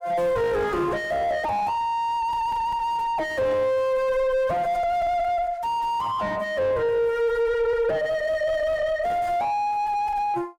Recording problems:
distorted audio; soft clipping, signal-to-distortion ratio 4 dB

